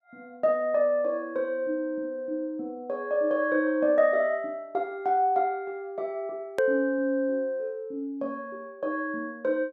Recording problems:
edit click; at 6.5 s

